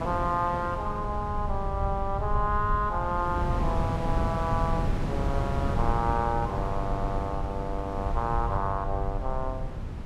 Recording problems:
low-frequency rumble; below 88 Hz, SNR 4 dB
wind on the microphone; below 440 Hz, SNR 5 dB
audio stuttering; at 7 s

